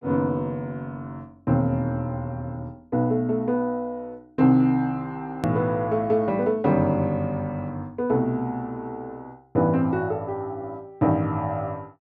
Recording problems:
hard cut with a click; at 5.5 s

